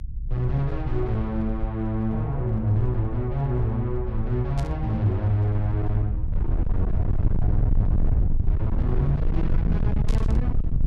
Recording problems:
distortion; hard clipping, uneven, signal-to-distortion ratio 7 dB
low-frequency rumble; below 82 Hz, SNR 1 dB
static burst; at 4.5 s and at 10 s; peak -8 dB vs average level

